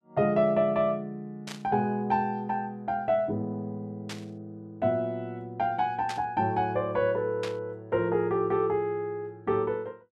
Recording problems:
static burst; 4 times, first at 1.5 s; peak -5 dB vs average level

